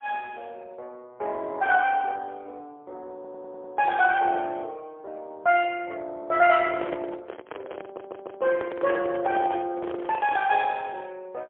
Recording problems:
phone line; 300 Hz to 3.3 kHz, AMR-NB, then MP3
audio stuttering; at 3 s and at 8 s
microphone handling noise; from 6.5 to 11 s; peak -5 dB vs average level

